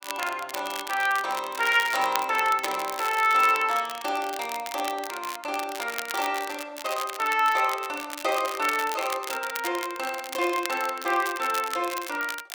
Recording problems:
crackle; vinyl, SNR 10 dB

